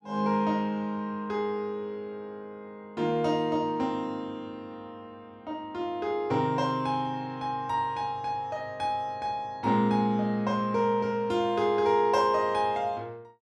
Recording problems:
none

